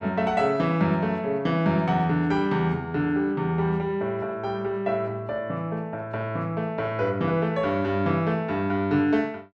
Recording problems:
none

